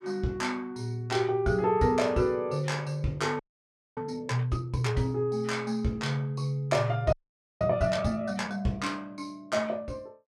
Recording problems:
audio freezing; at 3.5 s for 0.5 s and at 7 s

